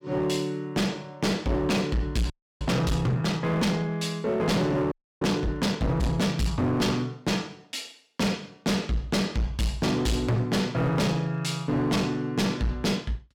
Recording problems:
distortion; hard clipping, uneven, signal-to-distortion ratio 7 dB
frozen audio; at 2.5 s and at 5 s

